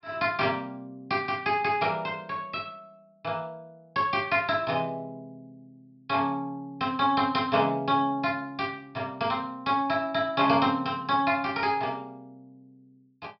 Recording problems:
low-pass filter; nothing above 5.4 kHz

